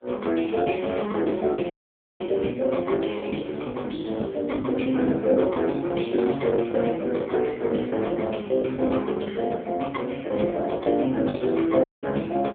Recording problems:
phone line; 220 Hz to 3.6 kHz, AMR-NB
packet loss; 8% of the sound replaced, filled with the last packet
dropout; at 1.5 s for 0.5 s and at 12 s

